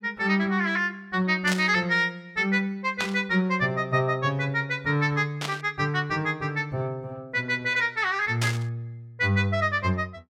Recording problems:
burst of static; 4 times, first at 1.5 s; peak 0 dB vs average level

